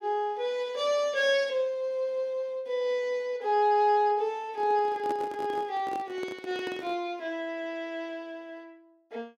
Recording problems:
microphone handling noise; from 4.5 to 7 s; peak -4 dB vs average level

